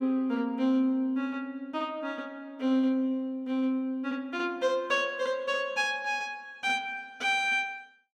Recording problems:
none

